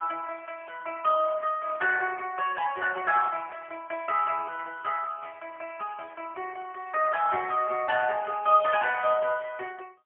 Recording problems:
phone line; 280 Hz to 3.1 kHz, AMR-NB, then MP3
static burst; 4 times, first at 2 s; peak -16 dB vs average level

